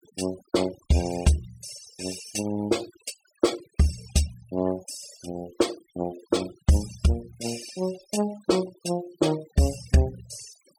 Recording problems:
noise reduction artefacts; signal-to-artefact ratio 14 dB

